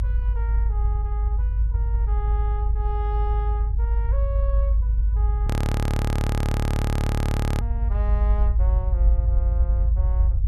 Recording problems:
low-frequency rumble; below 74 Hz, strongest tone 52 Hz, SNR -14 dB
audio freezing; at 5.5 s for 2 s

